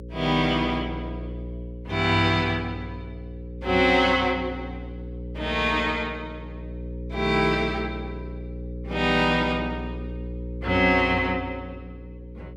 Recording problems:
hum; 60 Hz, harmonics up to 540 Hz, SNR 12 dB

